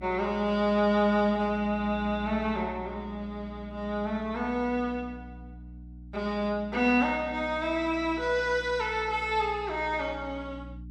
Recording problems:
electrical hum; 60 Hz, harmonics up to 300 Hz, SNR 17 dB

